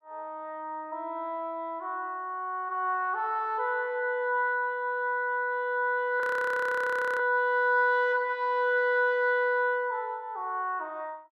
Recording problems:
frozen audio; at 6 s for 1 s

